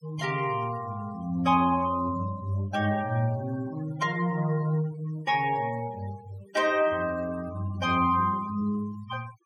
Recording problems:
noise reduction artefacts; signal-to-artefact ratio 18 dB

